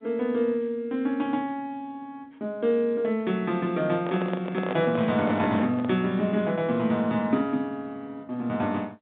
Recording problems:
phone line; 130 Hz to 3.8 kHz, G.711
microphone handling noise; from 4 to 6 s; peak -1 dB vs average level

